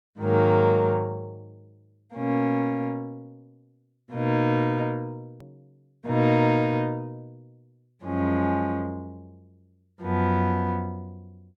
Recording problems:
hard cut with a click; at 5.5 s

